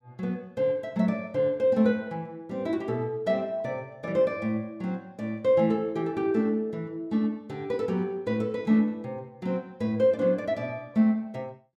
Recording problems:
none

